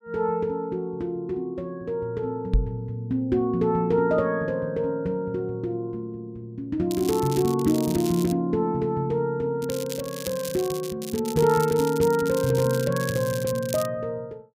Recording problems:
microphone thump; at 2.5 s; peak +7 dB vs average level
crackle; from 7 to 8.5 s, from 9.5 to 11 s and from 11 to 14 s; loose cable, SNR 12 dB

